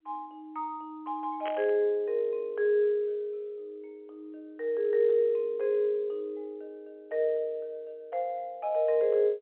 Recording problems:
phone line; 340 Hz to 3.7 kHz, G.711
burst of static; at 1.5 s; peak -7 dB vs average level

